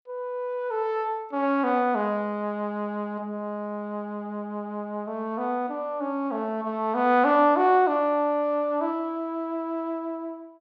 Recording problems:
none

